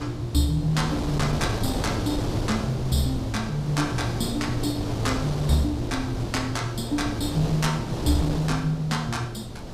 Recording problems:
wind on the microphone; below 550 Hz, SNR 5 dB

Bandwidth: 15 kHz